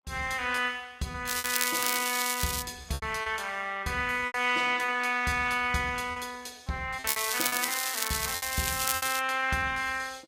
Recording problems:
lossy compression; Vorbis, log-spectral distance 7 dB, nothing above 14.7 kHz
packet loss; 9% of the sound replaced, filled with repeated pitch periods
crackling; from 1.5 to 2.5 s and from 7 to 9 s; loose cable, SNR 0 dB

